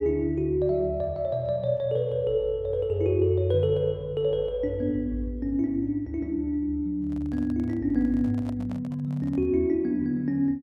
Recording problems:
handling noise; from 7 to 9.5 s; peak -11 dB vs average level

